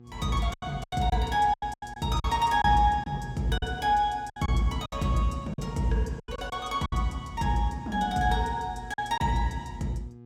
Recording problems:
hum; 60 Hz, harmonics up to 840 Hz, SNR 21 dB
lost packets; 9% of the sound replaced, filled with silence

